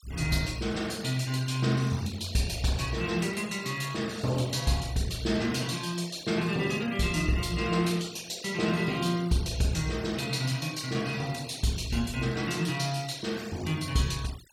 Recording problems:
denoising artefacts; signal-to-artefact ratio 17 dB

